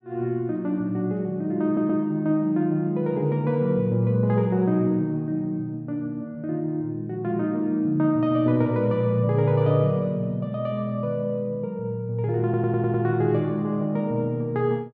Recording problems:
audio stuttering; at 1.5 s and at 12 s

